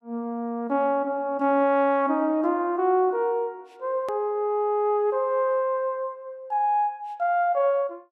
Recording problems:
click at an edit; at 4 s

